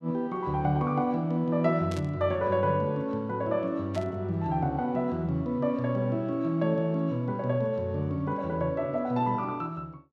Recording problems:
static burst; at 2 s and at 4 s; peak -10 dB vs average level

